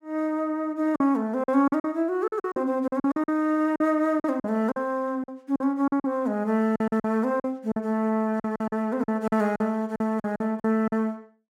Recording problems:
packet loss; 13% of the sound replaced, filled with silence

